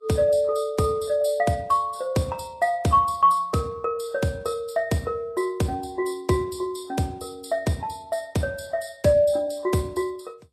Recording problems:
lossy compression; Vorbis, log-spectral distance 2 dB, nothing above 13.8 kHz

